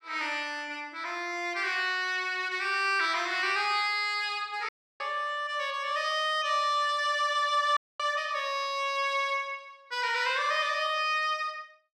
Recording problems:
audio cutting out; at 4.5 s and at 8 s

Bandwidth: 14.5 kHz